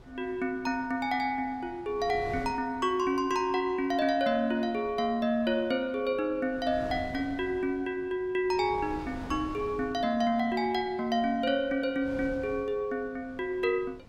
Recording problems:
wind on the microphone; below 490 Hz, SNR 18 dB

